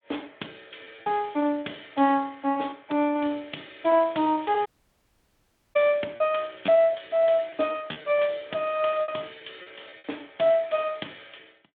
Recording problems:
phone line; 220 Hz to 3.6 kHz, Speex
packet loss; 7% of the sound replaced, filled with repeated pitch periods
dropout; at 4.5 s for 1 s

